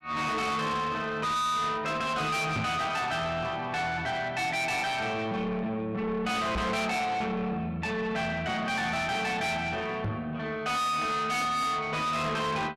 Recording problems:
distortion; soft clipping, signal-to-distortion ratio 7 dB
microphone bump; at 2.5 s, at 6.5 s and at 10 s; peak +2 dB vs average level

